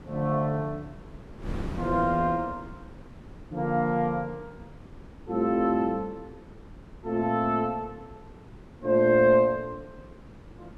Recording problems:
wind noise; below 320 Hz, SNR 18 dB

